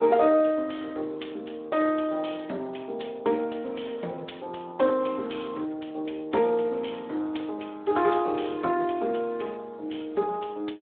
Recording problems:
phone line; 280 Hz to 3.5 kHz, Speex

